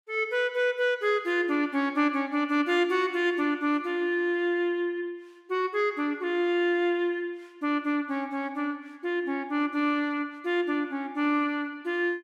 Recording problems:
none

